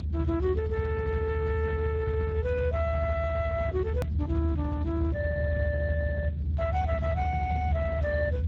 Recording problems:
codec artefacts; Speex, log-spectral distance 2 dB
rumble; below 110 Hz, strongest tone 76 Hz, SNR -1 dB
edit click; at 4 s

